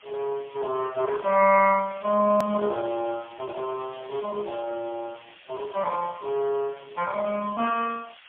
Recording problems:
telephone audio; 190 Hz to 3.1 kHz, AMR-NB, then MP3
hiss; SNR 22 dB
hard cut with a click; at 2.5 s

